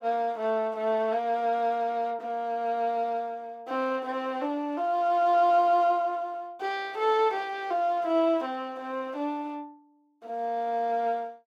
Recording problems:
none

